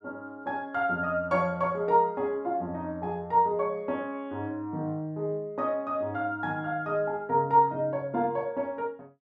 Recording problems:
none

